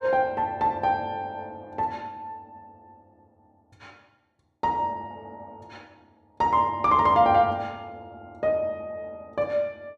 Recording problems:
none

